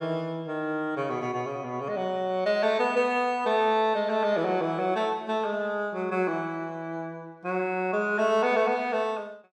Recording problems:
none

